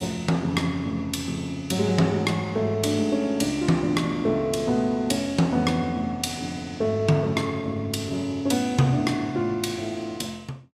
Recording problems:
none

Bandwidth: 15 kHz